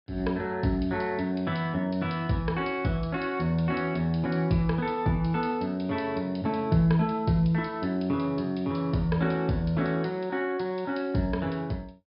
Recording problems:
treble missing; nothing above 5.5 kHz

